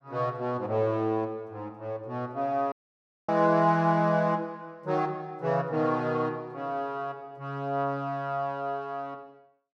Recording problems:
dropout; at 2.5 s for 0.5 s

